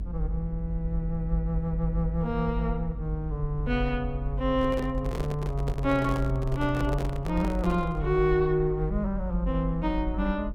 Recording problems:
low-frequency rumble; below 52 Hz, strongest tone 50 Hz, SNR 5 dB
microphone handling noise; from 4.5 to 8 s; peak -2 dB vs average level

